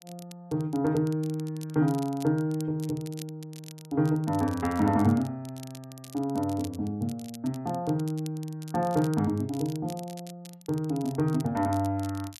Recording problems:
crackling; vinyl, SNR 20 dB

